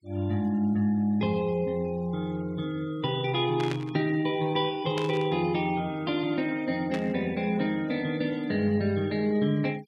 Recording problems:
noise reduction artefacts; signal-to-artefact ratio 25 dB
static burst; at 3.5 s, at 5 s and at 7 s; peak -5 dB vs average level

